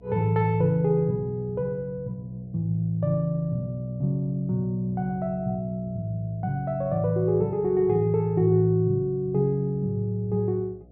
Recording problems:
treble missing; nothing above 8 kHz
hum; 60 Hz, harmonics up to 720 Hz, SNR 25 dB

